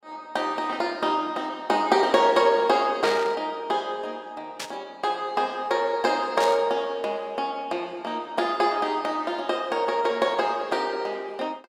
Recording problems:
burst of static; at 3 s, at 4.5 s and at 6.5 s; peak -2 dB vs average level

